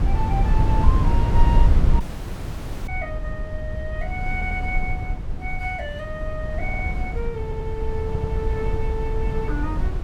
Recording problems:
wind on the microphone; below 90 Hz, SNR -6 dB
dropout; at 2 s for 1 s
audio stuttering; 4 times, first at 4.5 s

